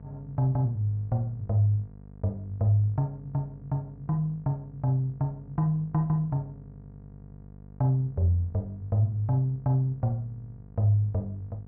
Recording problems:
electrical hum; 50 Hz, harmonics up to 700 Hz, SNR 20 dB

